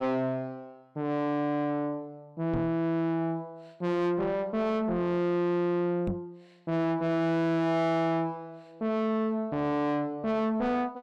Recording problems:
distorted audio; soft clipping, signal-to-distortion ratio 6 dB
microphone bump; at 2.5 s and at 6 s; peak +2 dB vs average level

